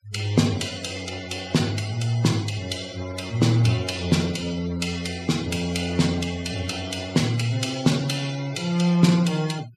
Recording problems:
noise reduction artefacts; signal-to-artefact ratio 17 dB

